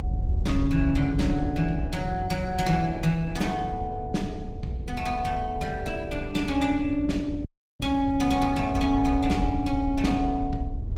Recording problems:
codec artefacts; Opus, log-spectral distance 2 dB, nothing above 19 kHz
low-frequency rumble; below 90 Hz, SNR 7 dB
wind noise; below 290 Hz, SNR 15 dB
audio cutting out; at 7.5 s

